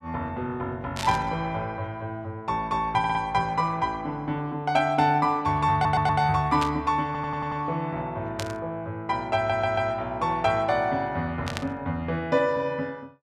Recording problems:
burst of static; 4 times, first at 1 s; peak -2 dB vs average level
audio stuttering; 4 times, first at 3 s

